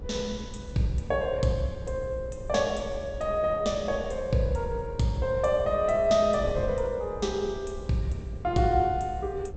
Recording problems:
treble cut off; nothing above 8 kHz
electrical hum; 60 Hz, harmonics up to 540 Hz, SNR 18 dB
wind on the microphone; below 130 Hz, SNR 14 dB

